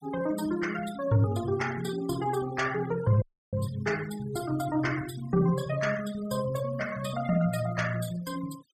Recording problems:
denoising artefacts; signal-to-artefact ratio 15 dB
audio cutting out; at 3 s

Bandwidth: 14.5 kHz